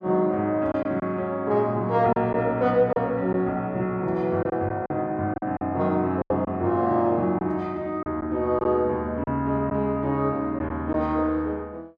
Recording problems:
packet loss; 5% of the sound replaced, filled with silence

